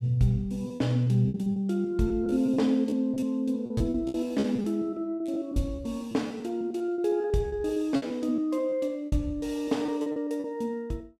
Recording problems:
lost packets; 13% of the sound replaced, filled with repeated pitch periods

